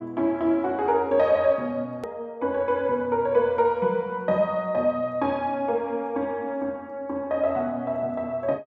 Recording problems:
hard cut with a click; at 2 s

